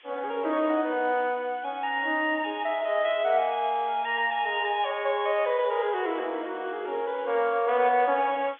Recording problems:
telephone audio; 280 Hz to 3.6 kHz, G.711
background hiss; SNR 26 dB

